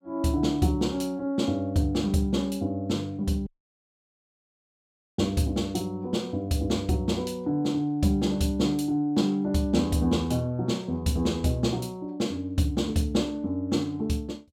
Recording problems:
dropout; at 3.5 s for 1.5 s

